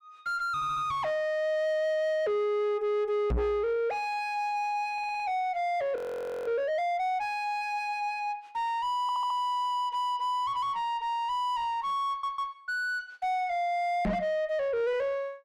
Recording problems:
distortion; soft clipping, signal-to-distortion ratio 10 dB
audio stuttering; 4 times, first at 0.5 s
microphone thump; at 3.5 s and at 14 s; peak +5 dB vs average level
frozen audio; at 6 s for 0.5 s

